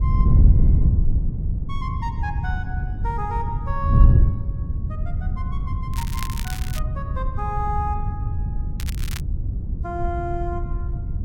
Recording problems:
wind noise; below 100 Hz, SNR -8 dB
crackle; at 6 s and at 9 s; loose cable, SNR 5 dB

